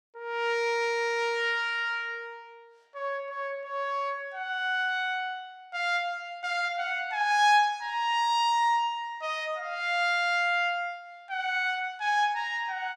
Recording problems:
none

